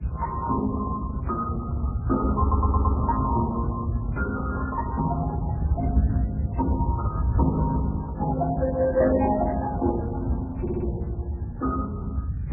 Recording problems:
codec artefacts; Speex, then MP3, log-spectral distance 2 dB, nothing above 2.5 kHz
low-frequency rumble; below 120 Hz, SNR 2 dB
stutter; at 2.5 s and at 11 s
burst of static; at 6 s and at 7.5 s; peak -17 dB vs average level

